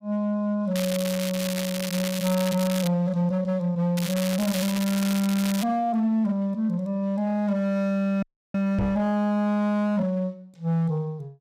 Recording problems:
distorted audio; hard clipping, signal-to-distortion ratio 11 dB
crackle; from 1 to 3 s and from 4 to 5.5 s; loose cable, SNR 8 dB
audio freezing; at 8 s
microphone thump; at 9 s; peak +1 dB vs average level

